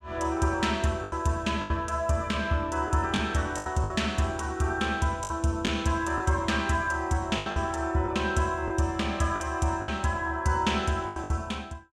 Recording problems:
lost packets; 7% of the sound replaced, filled with the last packet

